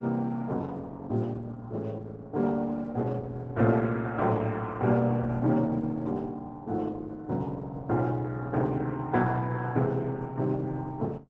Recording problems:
lossy compression; Opus, log-spectral distance 2 dB

